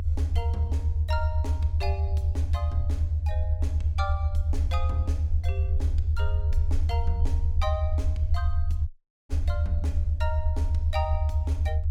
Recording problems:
rumble; below 80 Hz, SNR -11 dB
dropout; at 9 s

